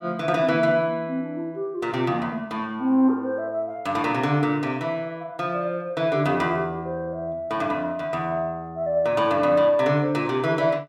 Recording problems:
none

